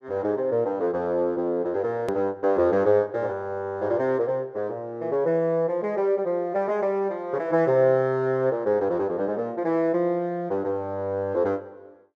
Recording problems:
edit click; at 2 s

